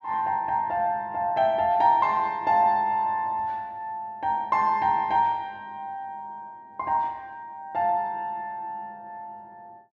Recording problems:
none

